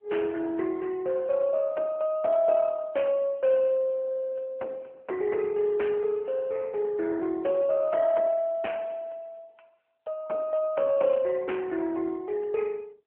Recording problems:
telephone audio; 280 Hz to 3.2 kHz, AMR-NB

